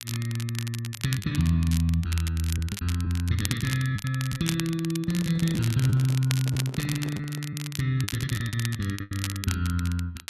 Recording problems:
crackling; vinyl, SNR 10 dB
lost packets; 6% of the sound replaced, filled with the last packet
handling noise; from 5 to 7.5 s; peak -10 dB vs average level

